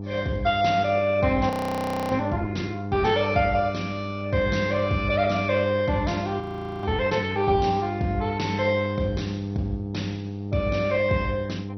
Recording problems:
lossy compression; MP2, log-spectral distance 3 dB
electrical hum; 50 Hz, harmonics up to 800 Hz, SNR 7 dB
frozen audio; at 1.5 s for 0.5 s and at 6.5 s

